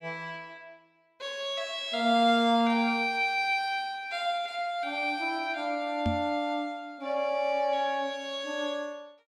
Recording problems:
microphone bump; at 6 s; peak +2 dB vs average level

